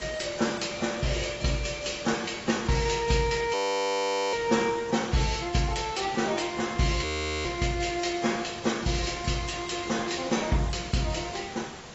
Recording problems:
codec artefacts; AAC, log-spectral distance 9 dB, nothing above 7.6 kHz
background hiss; slope -4 dB per octave, SNR 14 dB
frozen audio; at 3.5 s for 1 s and at 7 s

